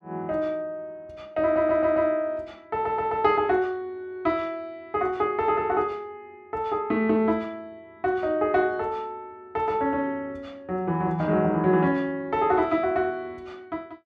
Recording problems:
audio stuttering; at 1.5 s and at 2.5 s

